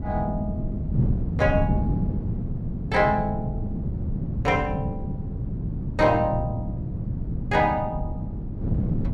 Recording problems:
wind on the microphone; below 190 Hz, SNR 3 dB

